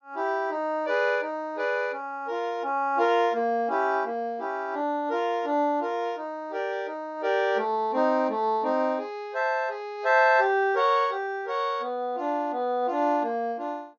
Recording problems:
treble cut off; nothing above 6.8 kHz

